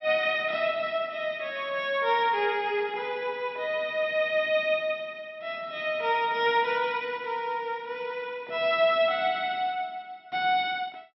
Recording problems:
treble cut off; nothing above 5.6 kHz

